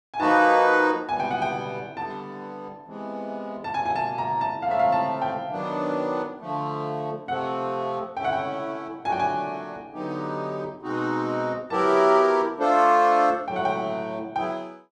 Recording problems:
none

